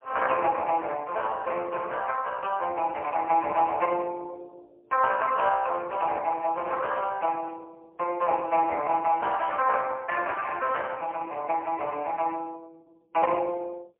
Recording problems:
phone line; 320 Hz to 2.3 kHz, AMR-NB, then MP3

